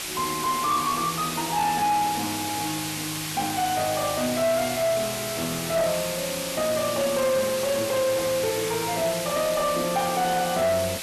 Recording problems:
distortion; soft clipping, signal-to-distortion ratio 10 dB
hiss; SNR 5 dB

